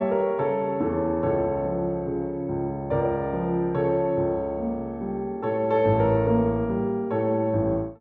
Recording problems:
low-pass filter; nothing above 8 kHz

